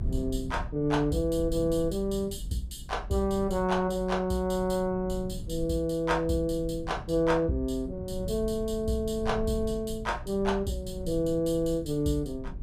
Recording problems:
rumble; below 110 Hz, SNR 11 dB

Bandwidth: 15 kHz